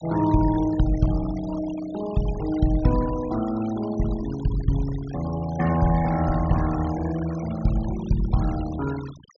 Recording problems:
treble missing; nothing above 6.9 kHz
noise reduction artefacts; signal-to-artefact ratio 16 dB

